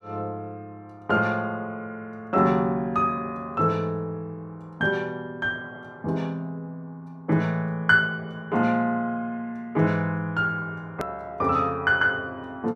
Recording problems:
edit click; at 11 s

